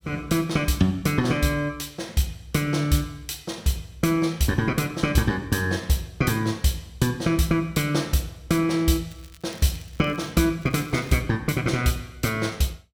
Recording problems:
crackling; from 9 to 10 s and at 11 s; loose cable, SNR 26 dB

